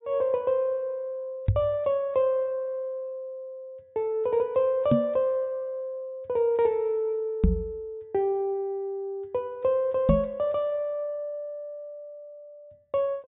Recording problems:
treble missing; nothing above 4 kHz
knock on the microphone; 4 times, first at 1.5 s; peak +10 dB vs average level

